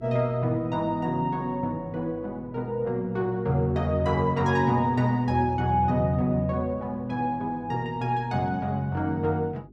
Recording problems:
hum; 50 Hz, harmonics up to 400 Hz, SNR 23 dB

